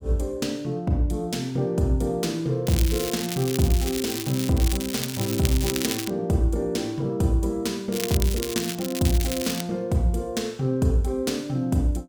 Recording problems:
crackle; from 2.5 to 6 s and from 8 to 9.5 s; loose cable, SNR 6 dB

